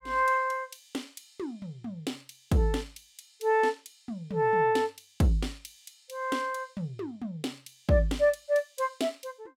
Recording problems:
none

